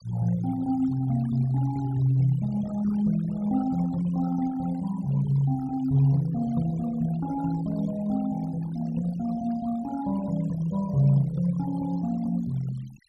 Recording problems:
noise reduction artefacts; signal-to-artefact ratio 20 dB

